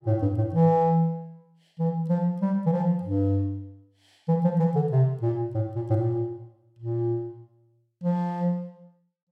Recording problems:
none

